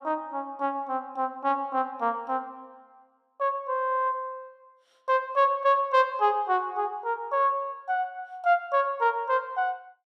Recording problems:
none

